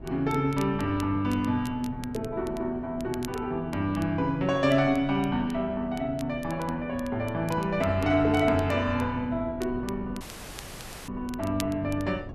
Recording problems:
wind noise; below 280 Hz, SNR 15 dB
crackling; vinyl, SNR 21 dB
audio cutting out; at 10 s for 1 s

